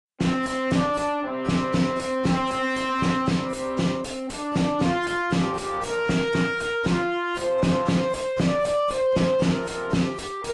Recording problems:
codec artefacts; AAC, log-spectral distance 3 dB, nothing above 10.4 kHz
distortion; soft clipping, signal-to-distortion ratio 6 dB

